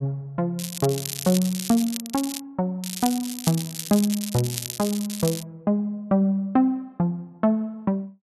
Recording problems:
crackle; from 0.5 to 2.5 s and from 3 to 5.5 s; loose cable, SNR 7 dB

